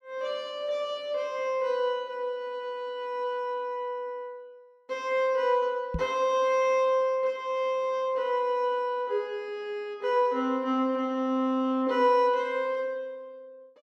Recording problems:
knock on the microphone; at 6 s; peak 0 dB vs average level

